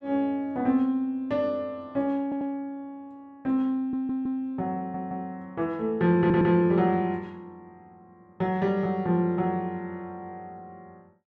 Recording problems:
audio stuttering; 4 times, first at 2 s

